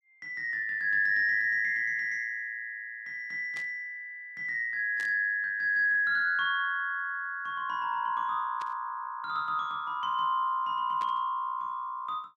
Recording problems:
static burst; 4 times, first at 3.5 s; peak -13 dB vs average level

